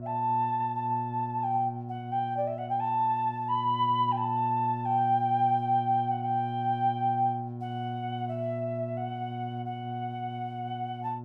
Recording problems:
hum; 60 Hz, harmonics up to 720 Hz, SNR 8 dB

